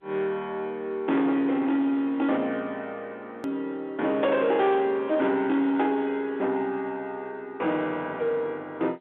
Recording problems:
telephone audio; 190 Hz to 3.7 kHz, G.711
distortion; soft clipping, signal-to-distortion ratio 12 dB
hard cut with a click; at 3.5 s

